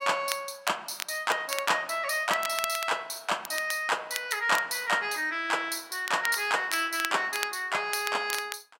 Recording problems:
crackle; vinyl, SNR 10 dB

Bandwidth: 16 kHz